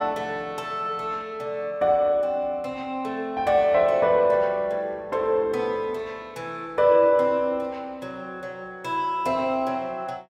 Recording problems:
none

